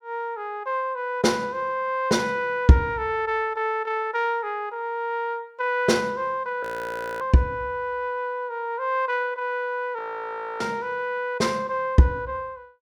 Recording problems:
frozen audio; at 6.5 s for 0.5 s and at 10 s for 0.5 s

